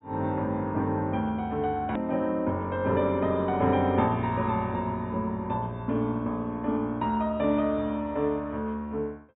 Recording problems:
treble cut off; nothing above 4 kHz
hard cut with a click; at 2 s

